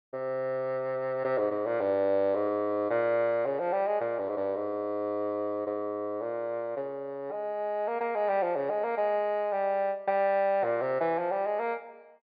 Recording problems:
treble missing; nothing above 4.8 kHz

